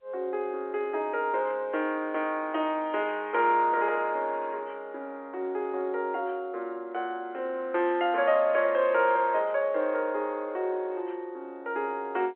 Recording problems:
telephone audio; 280 Hz to 3.3 kHz, G.711

